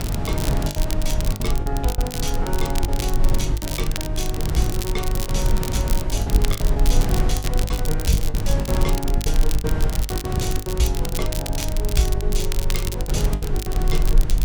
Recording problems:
electrical hum; 50 Hz, harmonics up to 700 Hz, SNR 5 dB
rumble; below 40 Hz, strongest tone 20 Hz, SNR -1 dB
wind noise; below 200 Hz, SNR 0 dB
crackling; vinyl, SNR 4 dB
packet loss; 13% of the sound replaced, filled with the last packet

